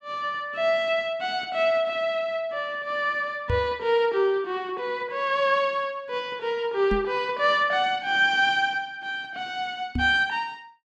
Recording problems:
microphone bump; at 3.5 s, at 7 s and at 10 s; peak 0 dB vs average level

